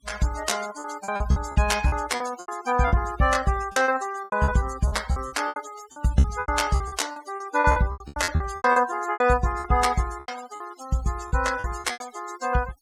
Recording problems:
noise reduction artefacts; signal-to-artefact ratio 16 dB
packet loss; 16% of the sound replaced, filled with repeated pitch periods

